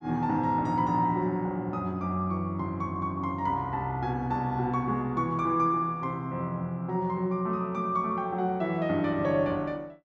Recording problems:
none

